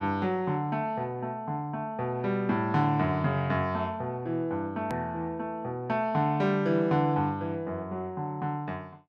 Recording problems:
hard cut with a click; at 5 s

